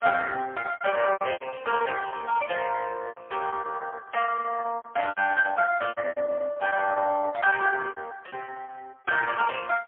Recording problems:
phone line; 300 Hz to 2.6 kHz, AMR-NB, then MP3
lost packets; 18% of the sound replaced, filled with repeated pitch periods

